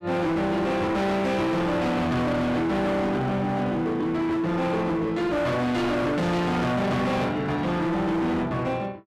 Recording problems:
distortion; hard clipping, signal-to-distortion ratio 7 dB

